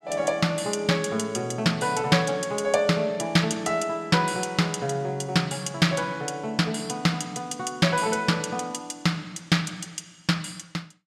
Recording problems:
none

